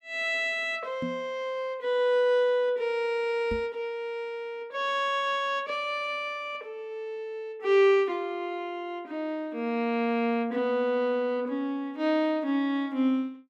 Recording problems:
microphone bump; at 1 s and at 3.5 s; peak -2 dB vs average level

